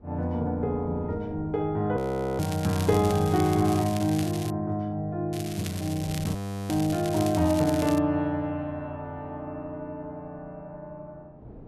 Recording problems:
wind noise; below 390 Hz, SNR 22 dB
audio freezing; at 2 s and at 6.5 s
crackle; from 2.5 to 4.5 s and from 5.5 to 8 s; loose cable, SNR 13 dB

